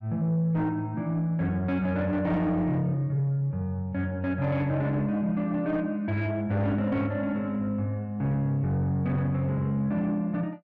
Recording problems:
distorted audio; soft clipping, signal-to-distortion ratio 12 dB

